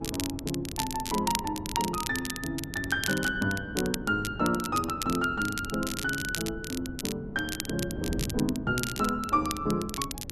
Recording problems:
wind noise; below 270 Hz, SNR 11 dB
crackling; vinyl, SNR 6 dB

